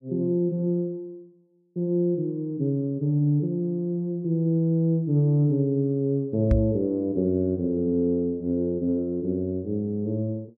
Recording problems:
microphone thump; at 6.5 s; peak +6 dB vs average level

